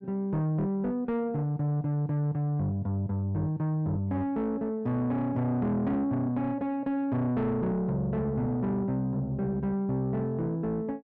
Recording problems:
distorted audio; soft clipping, signal-to-distortion ratio 11 dB

